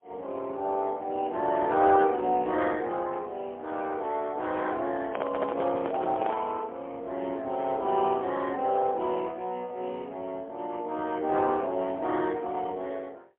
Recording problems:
telephone audio; 220 Hz to 3.3 kHz, AMR-NB, then MP3
handling noise; from 5 to 6.5 s; peak +2 dB vs average level

